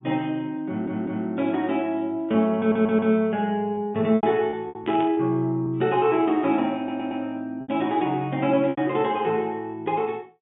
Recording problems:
low-pass filter; nothing above 3.5 kHz
packet loss; 5% of the sound replaced, filled with repeated pitch periods
stutter; at 0.5 s, at 2.5 s and at 7 s
burst of static; at 5 s; peak -11 dB vs average level

